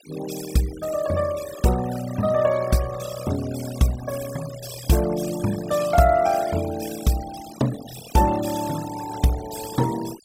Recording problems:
noise reduction artefacts; signal-to-artefact ratio 12 dB

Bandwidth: 16 kHz